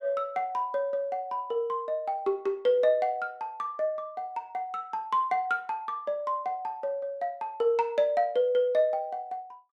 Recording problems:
none

